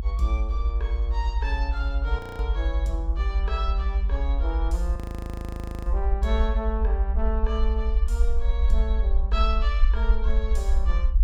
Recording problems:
rumble; below 60 Hz, SNR -7 dB
frozen audio; at 2 s and at 5 s for 1 s

